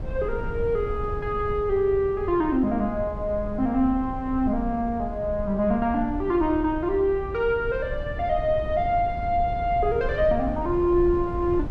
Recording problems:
low-frequency rumble; below 120 Hz, SNR 10 dB

